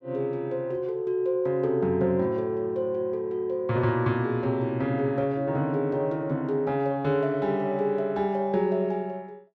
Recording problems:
none

